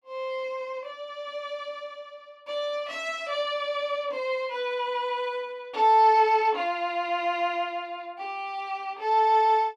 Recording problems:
none

